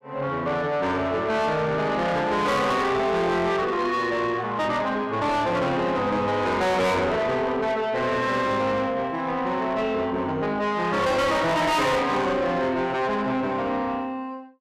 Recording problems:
distorted audio; soft clipping, signal-to-distortion ratio 7 dB

